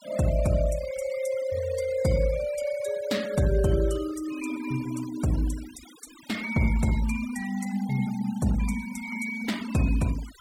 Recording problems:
noise reduction artefacts; signal-to-artefact ratio 18 dB

